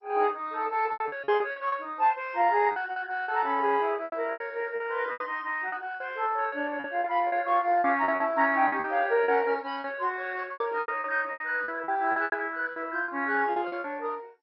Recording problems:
lossy codec; MP2, log-spectral distance 3 dB, nothing above 5.3 kHz
packet loss; 13% of the sound replaced, filled with repeated pitch periods

